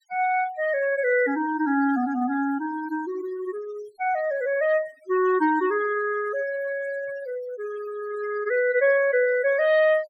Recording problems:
noise reduction artefacts; signal-to-artefact ratio 17 dB

